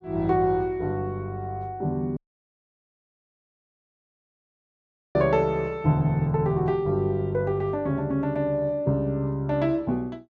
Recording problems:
audio cutting out; at 2 s for 3 s

